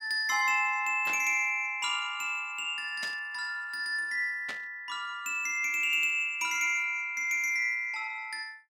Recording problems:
static burst; at 1 s, at 3 s and at 4.5 s; peak -6 dB vs average level

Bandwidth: 18 kHz